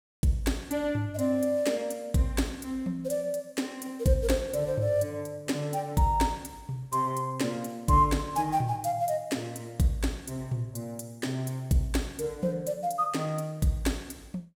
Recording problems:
none

